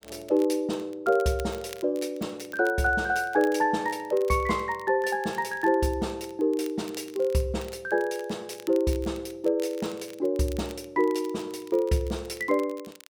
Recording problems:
crackling; vinyl, SNR 22 dB

